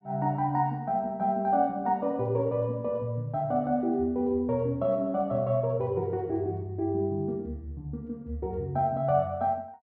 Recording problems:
none

